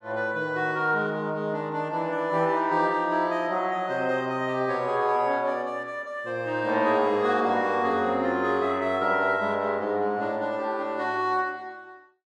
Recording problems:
none

